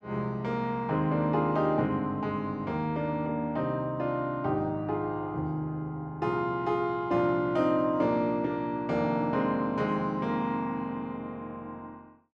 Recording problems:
none

